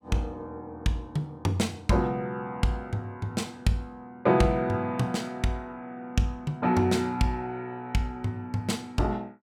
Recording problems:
none

